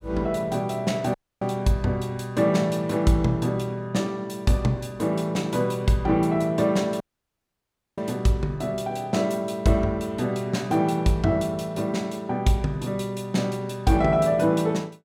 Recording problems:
audio cutting out; at 1 s and at 7 s for 1 s

